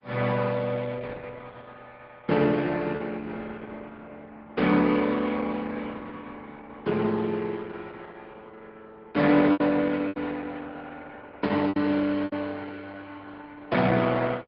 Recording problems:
treble missing; nothing above 5 kHz
lossy compression; Opus, log-spectral distance 4 dB
packet loss; 3% of the sound replaced, filled with repeated pitch periods

